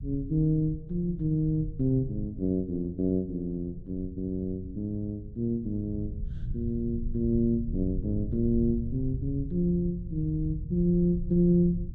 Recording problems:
low-frequency rumble; below 110 Hz, SNR 10 dB

